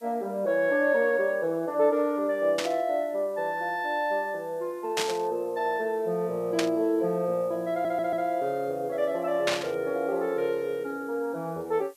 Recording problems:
hiss; slope +1 dB per octave, SNR 30 dB
static burst; 4 times, first at 2.5 s; peak +4 dB vs average level
stutter; at 7.5 s

